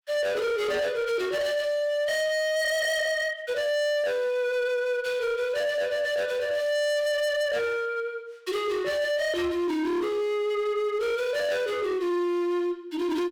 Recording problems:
distortion; hard clipping, uneven, signal-to-distortion ratio 6 dB

